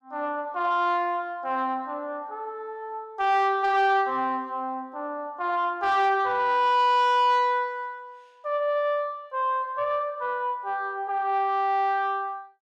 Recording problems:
distorted audio; soft clipping, signal-to-distortion ratio 12 dB

